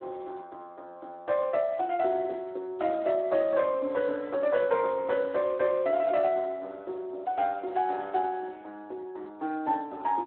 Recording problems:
telephone audio; 240 Hz to 3.3 kHz, Speex

